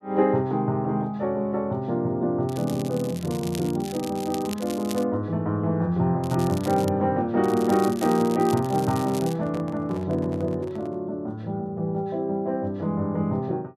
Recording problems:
crackling; from 2.5 to 5 s, at 6 s and from 7.5 to 9.5 s; loose cable, SNR 16 dB
microphone handling noise; from 9 to 11 s; peak -9 dB vs average level

